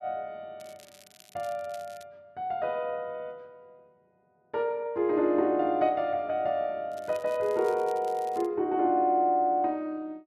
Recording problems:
crackling; from 0.5 to 2 s and from 7 to 8.5 s; loose cable, SNR 25 dB

